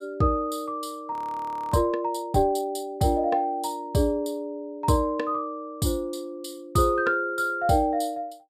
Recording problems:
frozen audio; at 1 s for 0.5 s

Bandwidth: 14.5 kHz